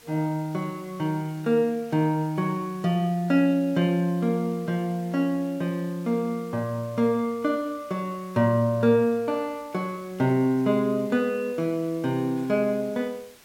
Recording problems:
background hiss; slope -1 dB per octave, SNR 25 dB

